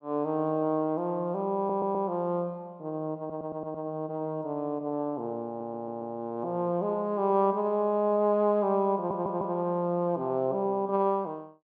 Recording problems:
audio stuttering; 4 times, first at 1.5 s

